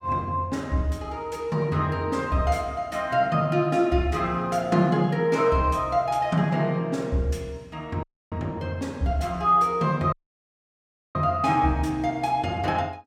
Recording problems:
dropout; at 8 s and at 10 s for 1 s

